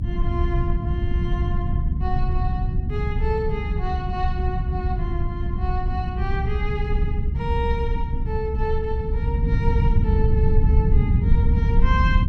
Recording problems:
rumble; below 100 Hz, SNR -7 dB

